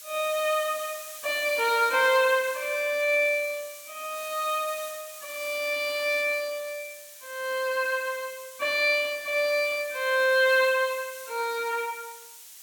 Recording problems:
hiss; slope +4 dB per octave, SNR 15 dB

